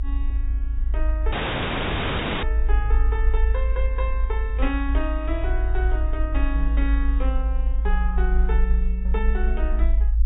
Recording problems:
treble cut off; nothing above 3.8 kHz
codec artefacts; Vorbis, log-spectral distance 2 dB
rumble; below 54 Hz, strongest tone 52 Hz, SNR -7 dB
dropout; at 1.5 s for 1 s

